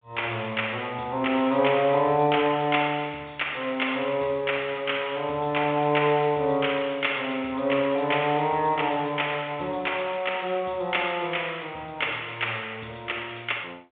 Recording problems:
telephone audio; 280 Hz to 3.5 kHz, G.726

